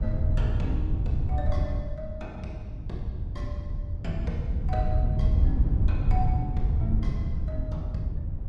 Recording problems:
wind on the microphone; below 100 Hz, SNR -9 dB

